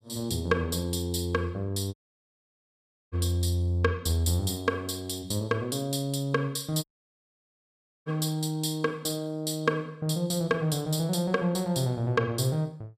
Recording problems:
audio cutting out; at 2 s for 1 s and at 7 s for 1 s

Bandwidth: 15 kHz